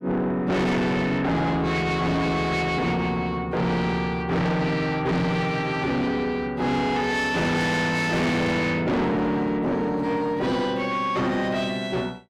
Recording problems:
distortion; soft clipping, signal-to-distortion ratio 6 dB

